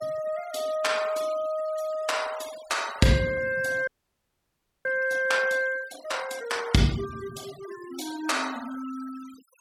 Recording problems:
denoising artefacts; signal-to-artefact ratio 18 dB
audio freezing; at 4 s for 1 s

